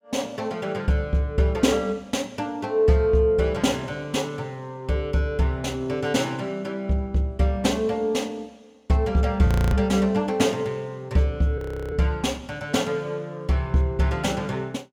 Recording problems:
audio freezing; at 9.5 s and at 12 s

